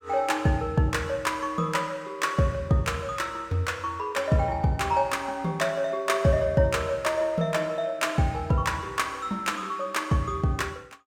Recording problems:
none

